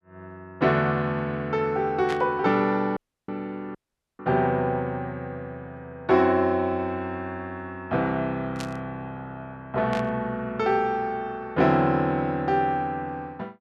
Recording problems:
burst of static; at 2 s, at 8.5 s and at 10 s; peak -6 dB vs average level
dropout; at 3 s and at 4 s

